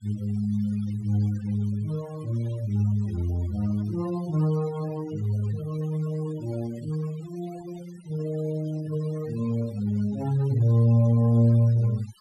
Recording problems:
noise reduction artefacts; signal-to-artefact ratio 21 dB

